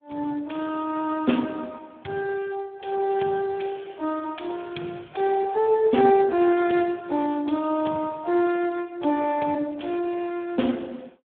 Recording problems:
phone line; 170 Hz to 3.5 kHz, Speex

